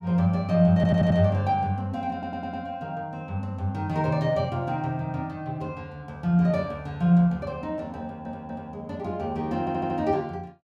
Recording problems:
stutter; 4 times, first at 1 s

